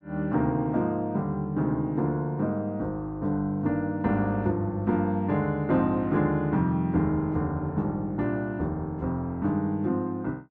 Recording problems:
none

